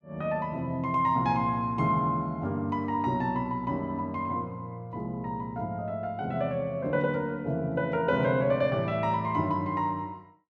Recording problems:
none

